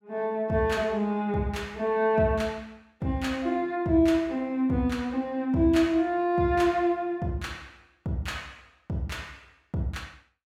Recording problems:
none

